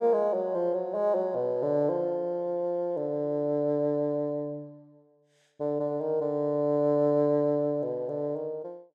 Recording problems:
none

